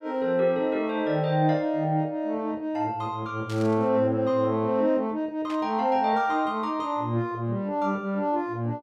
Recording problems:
static burst; at 3.5 s and at 5.5 s; peak -12 dB vs average level

